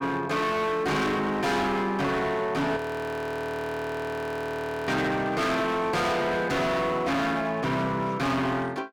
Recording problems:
distortion; hard clipping, signal-to-distortion ratio 6 dB
frozen audio; at 3 s for 2 s

